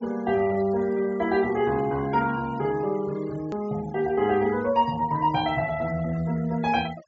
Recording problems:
treble cut off; nothing above 8 kHz
denoising artefacts; signal-to-artefact ratio 20 dB
hard cut with a click; at 3.5 s

